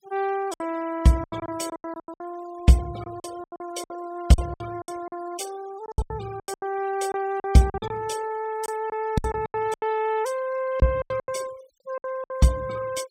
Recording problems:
denoising artefacts; signal-to-artefact ratio 19 dB
packet loss; 15% of the sound replaced, filled with silence

